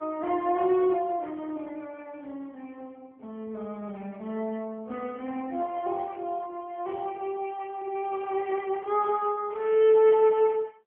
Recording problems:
phone line; 240 Hz to 3.3 kHz, AMR-NB

